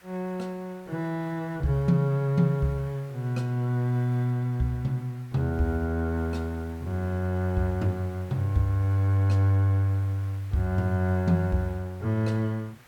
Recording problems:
background hiss; SNR 27 dB

